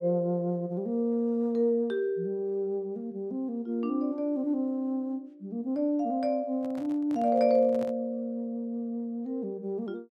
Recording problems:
handling noise; from 6.5 to 8 s; peak -10 dB vs average level

